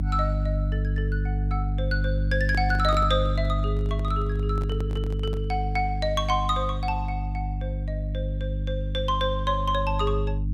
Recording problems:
hum; 50 Hz, harmonics up to 300 Hz, SNR -1 dB
microphone handling noise; from 2.5 to 5.5 s; peak -4 dB vs average level

